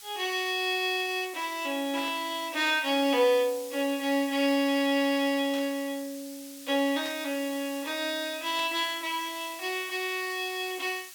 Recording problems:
hiss; slope +4 dB per octave, SNR 15 dB
static burst; 4 times, first at 2 s; peak -9 dB vs average level

